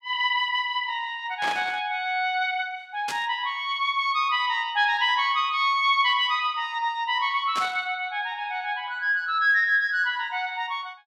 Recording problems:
static burst; at 1.5 s, at 3 s and at 7.5 s; peak -4 dB vs average level

